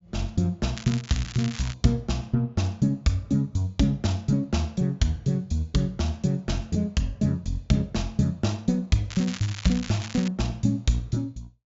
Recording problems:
treble cut off; nothing above 7.5 kHz
crackle; at 1 s and from 9 to 10 s; loose cable, SNR 12 dB

